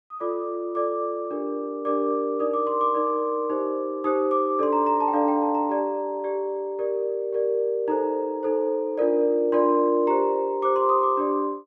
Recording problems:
none

